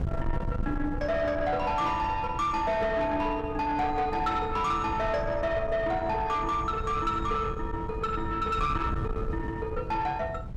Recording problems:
distorted audio; soft clipping, signal-to-distortion ratio 11 dB
wind noise; below 180 Hz, SNR 8 dB

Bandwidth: 14.5 kHz